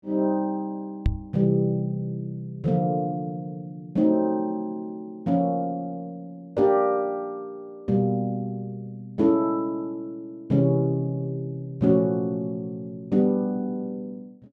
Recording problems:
knock on the microphone; at 1 s; peak +5 dB vs average level

